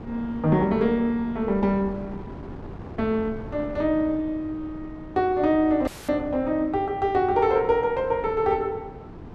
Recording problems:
wind on the microphone; below 380 Hz, SNR 16 dB
dropout; at 6 s

